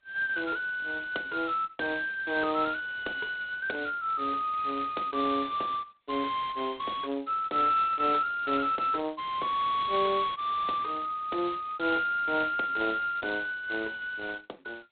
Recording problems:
telephone audio; 240 Hz to 4 kHz, G.726

